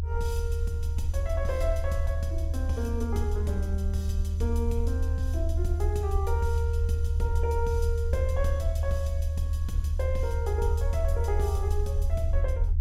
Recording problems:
rumble; below 78 Hz, strongest tone 76 Hz, SNR -5 dB

